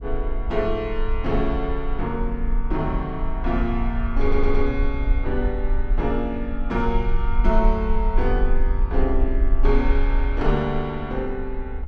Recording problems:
rumble; below 44 Hz, strongest tone 20 Hz, SNR 1 dB
audio stuttering; at 4 s

